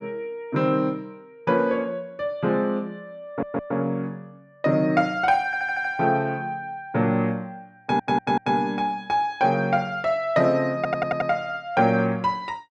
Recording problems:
stutter; 4 times, first at 3.5 s

